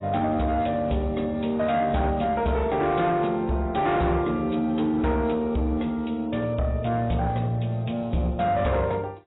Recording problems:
lossy compression; AAC, log-spectral distance 3 dB, nothing above 3.9 kHz
distorted audio; soft clipping, signal-to-distortion ratio 12 dB

